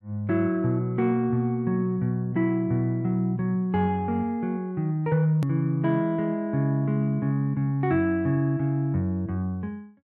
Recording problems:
edit click; at 5.5 s

